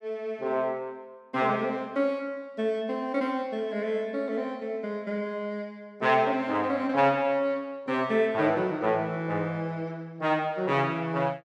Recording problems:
none

